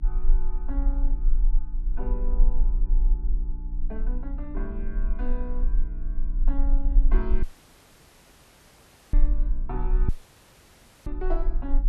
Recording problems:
electrical hum; 60 Hz, harmonics up to 300 Hz, SNR 5 dB
rumble; below 36 Hz, strongest tone 22 Hz, SNR -10 dB
audio cutting out; at 7.5 s for 1.5 s and at 10 s for 1 s

